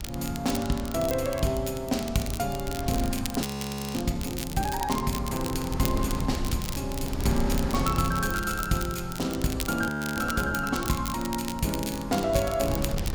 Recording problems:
wind noise; below 140 Hz, SNR 8 dB
crackling; vinyl, SNR 9 dB
audio freezing; at 3.5 s for 0.5 s and at 10 s

